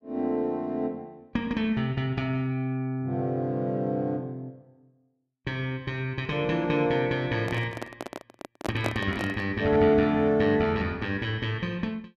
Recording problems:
microphone handling noise; from 7.5 to 9.5 s; peak +1 dB vs average level

